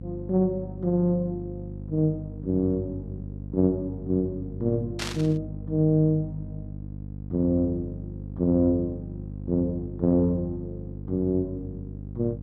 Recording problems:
hum; 50 Hz, harmonics up to 500 Hz, SNR 11 dB
burst of static; at 5 s; peak 0 dB vs average level

